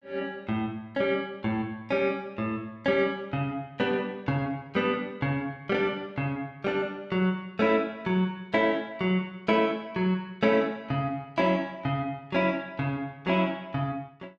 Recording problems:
none

